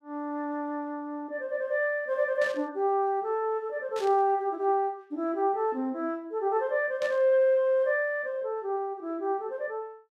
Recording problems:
burst of static; at 2.5 s, at 4 s and at 7 s; peak -10 dB vs average level

